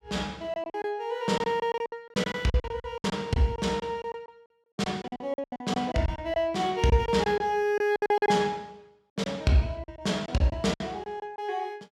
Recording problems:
packet loss; 14% of the sound replaced, filled with silence

